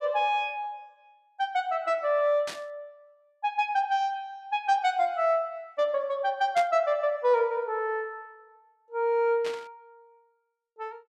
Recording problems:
burst of static; at 2.5 s, at 6.5 s and at 9.5 s; peak -5 dB vs average level

